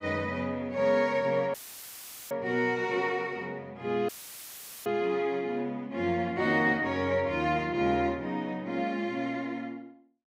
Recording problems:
dropout; at 1.5 s for 1 s and at 4 s for 1 s; filled with static

